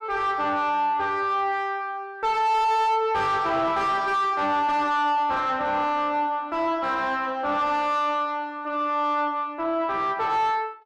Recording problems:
distorted audio; soft clipping, signal-to-distortion ratio 6 dB

